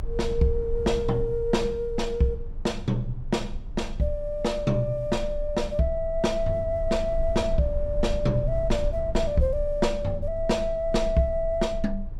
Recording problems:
rumble; below 48 Hz, strongest tone 22 Hz, SNR 9 dB

